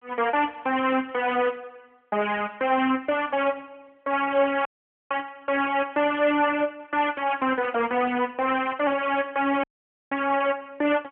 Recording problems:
phone line; 300 Hz to 3.2 kHz, AMR-NB
dropout; at 4.5 s and at 9.5 s

